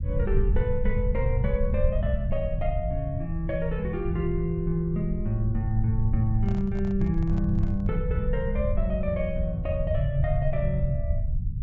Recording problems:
treble cut off; nothing above 8 kHz
rumble; below 92 Hz, SNR 1 dB
microphone handling noise; from 6.5 to 8 s; peak -12 dB vs average level

